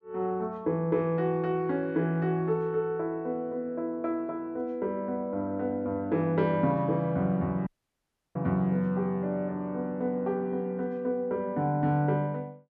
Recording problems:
dropout; at 7.5 s for 0.5 s

